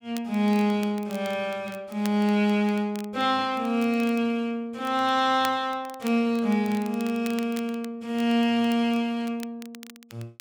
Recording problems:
crackling; vinyl, SNR 21 dB

